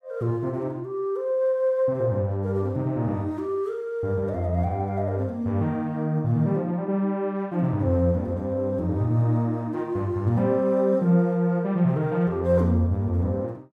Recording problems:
none

